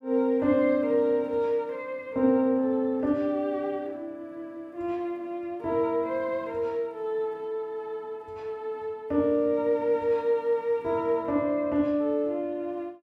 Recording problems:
none

